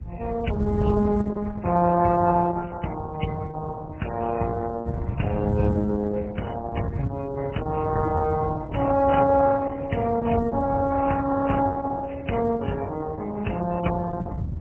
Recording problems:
lossy codec; MP3, then Opus, log-spectral distance 5 dB
wind noise; below 120 Hz, SNR 7 dB

